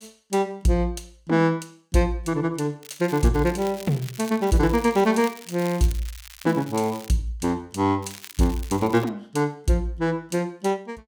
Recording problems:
crackling; at 3 s, from 3.5 to 7 s and from 8 to 9 s; loose cable, SNR 18 dB

